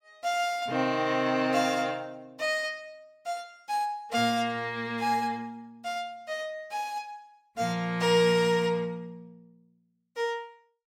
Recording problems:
none

